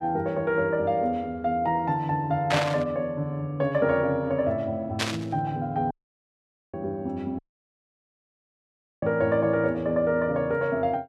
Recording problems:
burst of static; at 2.5 s and at 5 s; peak +4 dB vs average level
dropout; at 6 s for 1 s and at 7.5 s for 1.5 s

